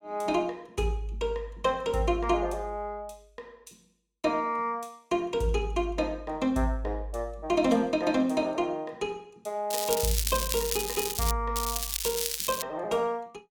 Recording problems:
crackle; from 9.5 to 11 s and from 12 to 13 s; loose cable, SNR 1 dB

